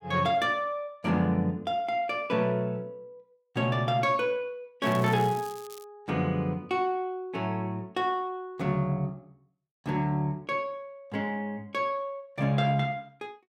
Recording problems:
crackling; from 5 to 6 s; loose cable, SNR 19 dB

